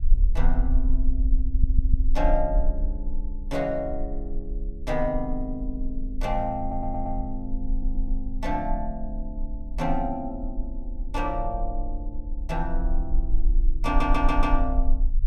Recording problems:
rumble; below 40 Hz, strongest tone 22 Hz, SNR -1 dB
audio stuttering; 4 times, first at 1.5 s

